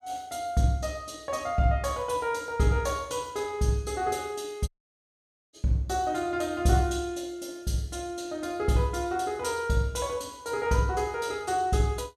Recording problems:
audio cutting out; at 4.5 s for 1 s

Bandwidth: 13.5 kHz